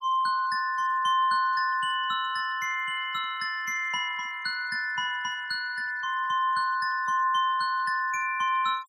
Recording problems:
denoising artefacts; signal-to-artefact ratio 24 dB

